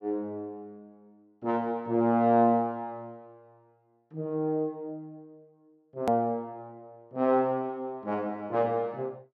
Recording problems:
edit click; at 6 s

